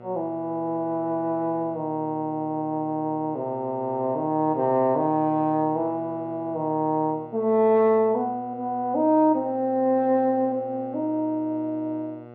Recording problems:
hum; 60 Hz, harmonics up to 1.6 kHz, SNR 19 dB

